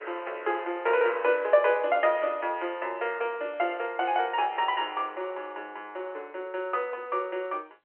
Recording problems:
telephone audio; 300 Hz to 3.2 kHz, G.711

